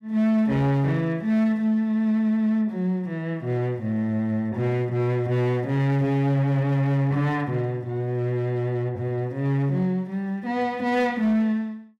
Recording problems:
distorted audio; hard clipping, signal-to-distortion ratio 11 dB

